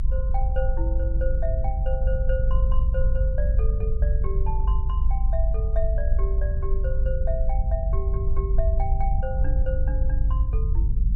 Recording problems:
rumble; below 58 Hz, strongest tone 22 Hz, SNR -9 dB

